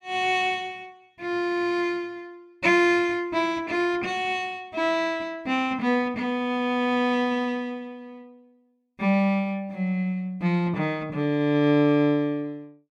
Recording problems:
none

